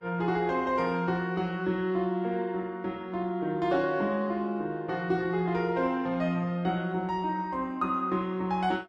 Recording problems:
lossy codec; Vorbis, log-spectral distance 2 dB

